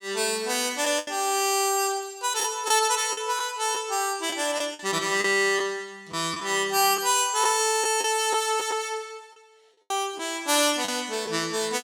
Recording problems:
lost packets; 5% of the sound replaced, filled with the last packet

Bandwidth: 17 kHz